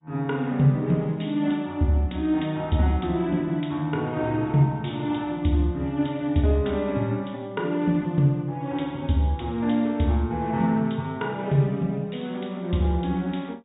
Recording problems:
treble missing; nothing above 3.8 kHz
lossy compression; MP2, log-spectral distance 2 dB

